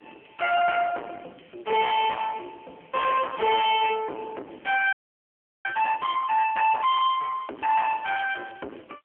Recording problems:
telephone audio; 900 Hz to 2.1 kHz, AMR-NB
distortion; soft clipping, signal-to-distortion ratio 6 dB
frozen audio; at 5 s for 0.5 s

